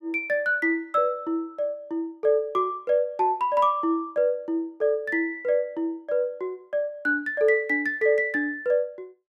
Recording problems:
none

